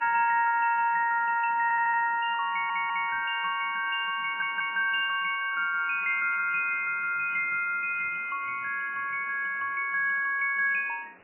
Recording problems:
lossy codec; MP3, log-spectral distance 5 dB, nothing above 2.5 kHz
background hiss; SNR 28 dB
audio stuttering; at 1.5 s, at 2.5 s and at 4 s

